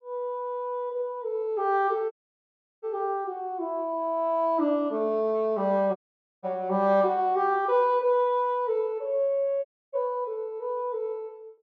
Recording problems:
audio cutting out; at 2 s for 0.5 s, at 6 s and at 9.5 s

